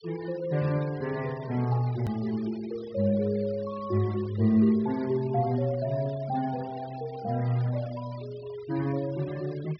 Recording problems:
low-pass filter; nothing above 5.5 kHz
denoising artefacts; signal-to-artefact ratio 21 dB
edit click; at 2 s

